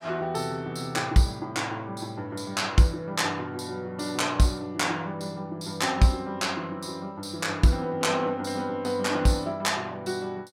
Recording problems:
none

